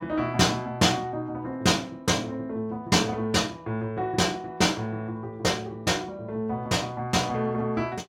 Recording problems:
none

